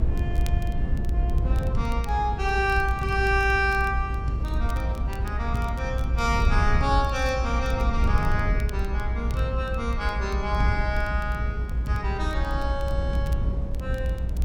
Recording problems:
rumble; below 74 Hz, SNR 0 dB
wind noise; below 130 Hz, SNR 12 dB
crackle; vinyl, SNR 24 dB

